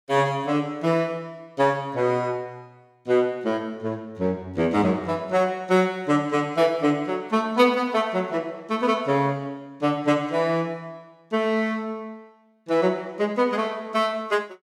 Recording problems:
none

